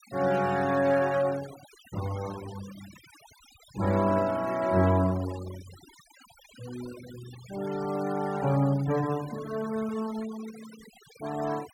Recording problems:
noise reduction artefacts; signal-to-artefact ratio 18 dB

